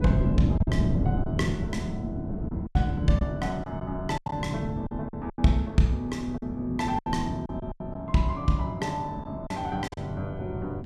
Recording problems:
wind on the microphone; below 230 Hz, SNR 3 dB
lost packets; 8% of the sound replaced, filled with silence

